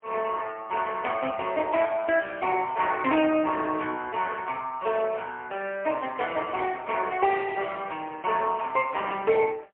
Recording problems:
phone line; 220 Hz to 3.2 kHz, AMR-NB, then MP3

